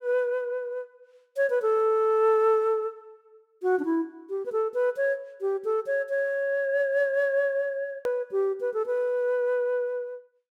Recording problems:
edit click; at 8 s

